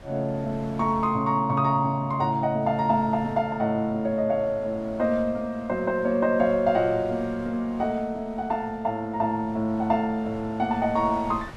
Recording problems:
wind on the microphone; below 870 Hz, SNR 22 dB

